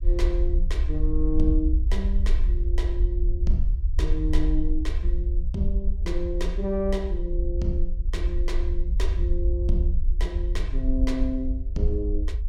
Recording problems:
low-frequency rumble; below 56 Hz, SNR -4 dB

